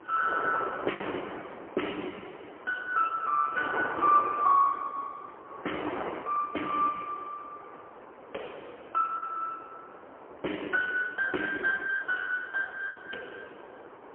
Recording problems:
telephone audio; 280 Hz to 3.1 kHz, AMR-NB, then MP3
wind on the microphone; below 1.2 kHz, SNR 12 dB
lost packets; 1.8% of the sound replaced, filled with the last packet

